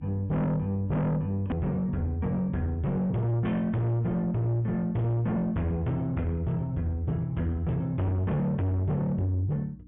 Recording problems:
treble missing; nothing above 3.5 kHz
distortion; soft clipping, signal-to-distortion ratio 6 dB
electrical hum; 60 Hz, harmonics up to 300 Hz, SNR 24 dB
click at an edit; at 1.5 s

